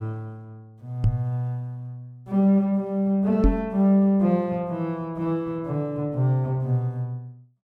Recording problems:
microphone bump; at 1 s and at 3.5 s; peak +7 dB vs average level

